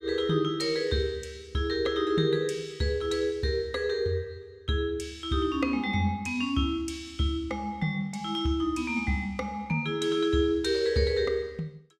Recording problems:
none

